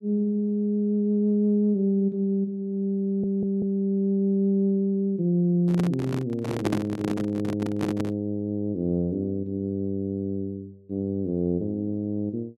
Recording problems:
stutter; at 3 s
handling noise; from 5.5 to 8 s; peak +3 dB vs average level

